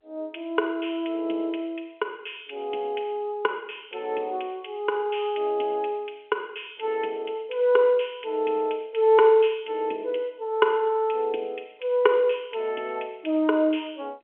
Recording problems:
phone line; 260 Hz to 3.4 kHz, G.711

